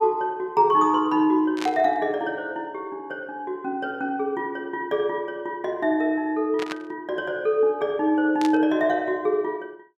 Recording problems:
burst of static; at 1.5 s, at 6.5 s and at 8.5 s; peak -4 dB vs average level

